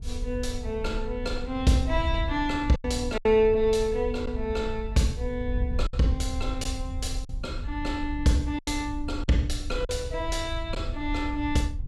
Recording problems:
wind noise; below 74 Hz, SNR 7 dB
packet loss; 4% of the sound replaced, filled with silence

